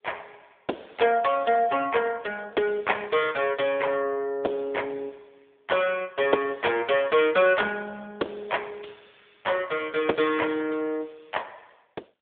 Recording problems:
phone line; 280 Hz to 3.4 kHz, AMR-NB

